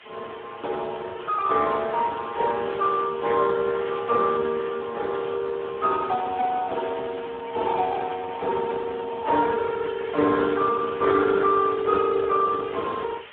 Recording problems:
telephone audio; 240 Hz to 3.8 kHz, Speex
background hiss; SNR 19 dB

